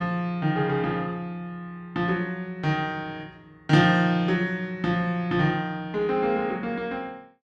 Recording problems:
none

